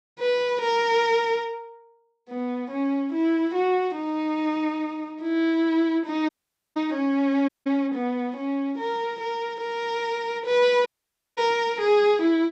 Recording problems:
dropout; at 6.5 s, at 7.5 s and at 11 s for 0.5 s

